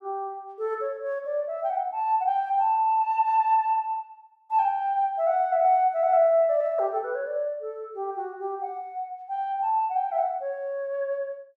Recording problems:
none

